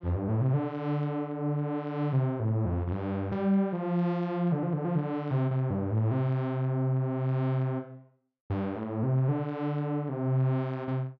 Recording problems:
none

